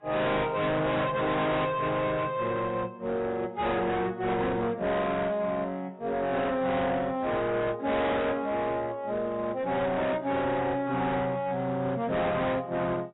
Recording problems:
lossy compression; AAC, log-spectral distance 2 dB, nothing above 3.8 kHz
distorted audio; hard clipping, signal-to-distortion ratio 6 dB

